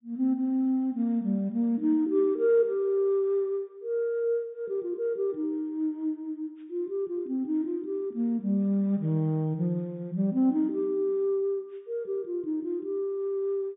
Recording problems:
treble missing; nothing above 3.7 kHz

